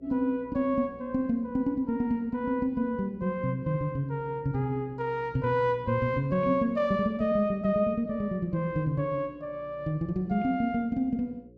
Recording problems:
electrical hum; 60 Hz, harmonics up to 540 Hz, SNR 26 dB

